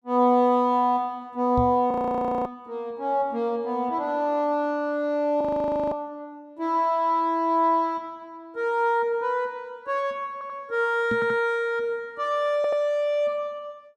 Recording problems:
knock on the microphone; at 1.5 s and at 11 s; peak 0 dB vs average level
audio freezing; at 2 s for 0.5 s and at 5.5 s for 0.5 s
stutter; at 10 s, at 11 s and at 13 s

